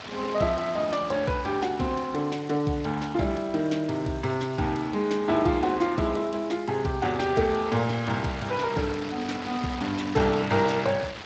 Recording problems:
lossy compression; Speex, log-spectral distance 7 dB, nothing above 7.3 kHz
hiss; slope 0 dB per octave, SNR 27 dB
wind on the microphone; below 3.5 kHz, SNR 14 dB

